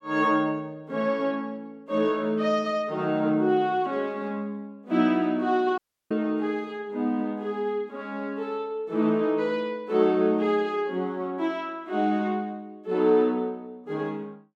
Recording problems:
dropout; at 6 s

